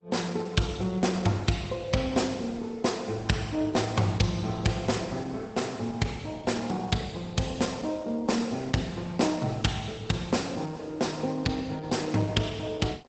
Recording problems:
lossy codec; Opus, log-spectral distance 4 dB, nothing above 8 kHz

